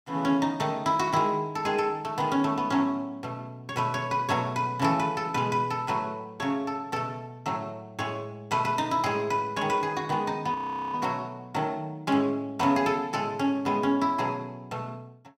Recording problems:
audio freezing; at 11 s

